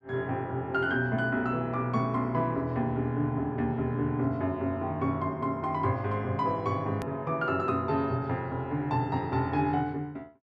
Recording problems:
click at an edit; at 7 s

